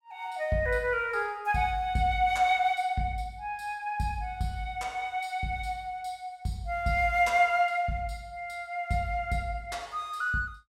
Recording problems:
none

